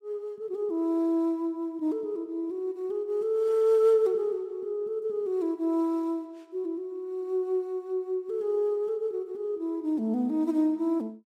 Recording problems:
none

